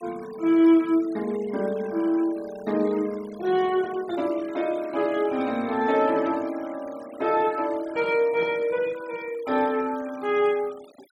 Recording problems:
noise reduction artefacts; signal-to-artefact ratio 22 dB

